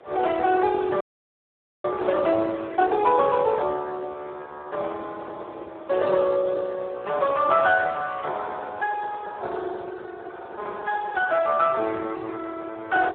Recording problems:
telephone audio; 320 Hz to 3.7 kHz, Speex
wind on the microphone; below 720 Hz, SNR 20 dB
audio freezing; at 1 s for 1 s

